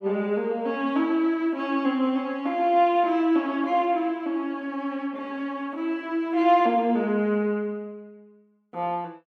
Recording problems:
none

